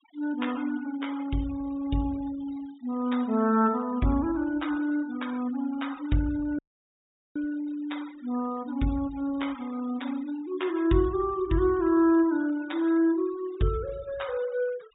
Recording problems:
treble cut off; nothing above 4 kHz
noise reduction artefacts; signal-to-artefact ratio 21 dB
dropout; at 6.5 s for 1 s

